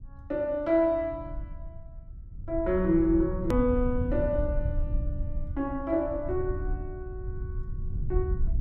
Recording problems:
rumble; below 86 Hz, SNR 6 dB
click at an edit; at 3.5 s

